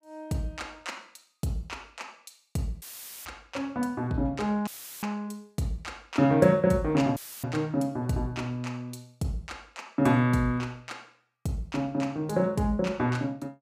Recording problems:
audio cutting out; at 3 s, at 4.5 s and at 7 s; filled with static

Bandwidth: 15 kHz